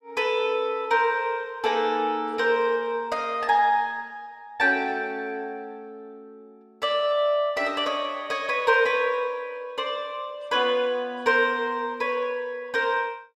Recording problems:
none

